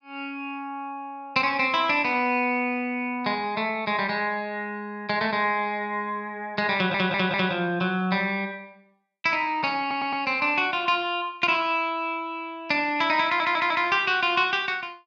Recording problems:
audio stuttering; at 7 s, at 10 s and at 13 s

